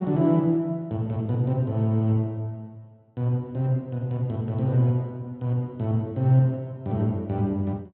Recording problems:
treble cut off; nothing above 4 kHz

